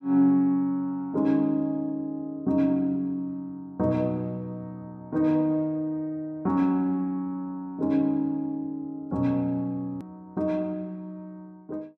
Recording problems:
click at an edit; at 10 s

